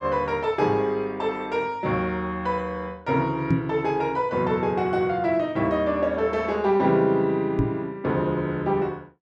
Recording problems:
microphone bump; at 3.5 s and at 7.5 s; peak +6 dB vs average level

